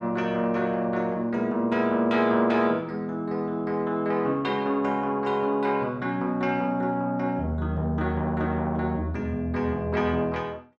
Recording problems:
none

